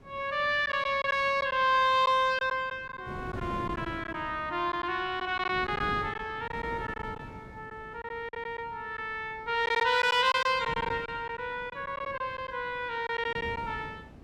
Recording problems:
wind on the microphone; below 420 Hz, SNR 17 dB
packet loss; 7% of the sound replaced, filled with silence

